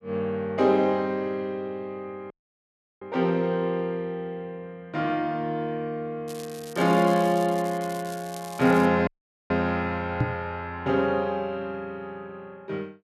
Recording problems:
audio cutting out; at 2.5 s for 0.5 s and at 9 s
crackling; from 6.5 to 9 s; loose cable, SNR 18 dB
microphone bump; at 10 s; peak +5 dB vs average level

